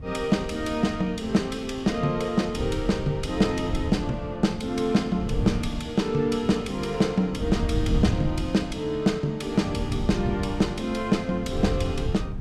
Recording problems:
wind on the microphone; below 140 Hz, SNR 7 dB

